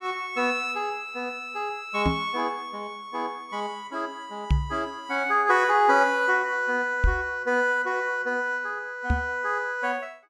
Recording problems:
microphone bump; 4 times, first at 2 s; peak +6 dB vs average level

